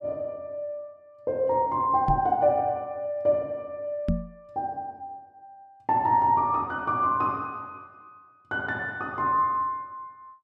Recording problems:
knock on the microphone; at 2 s and at 4 s; peak +4 dB vs average level

